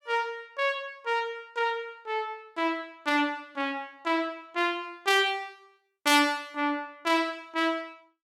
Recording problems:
none

